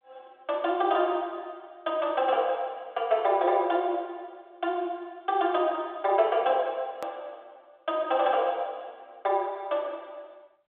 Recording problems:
phone line; 300 Hz to 3.6 kHz, G.726
hard cut with a click; at 7 s

